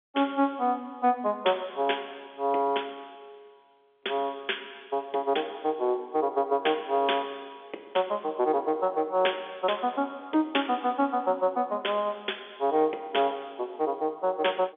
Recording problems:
phone line; 280 Hz to 3.5 kHz, G.711

